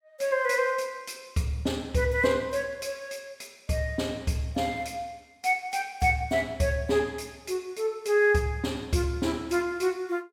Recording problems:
none

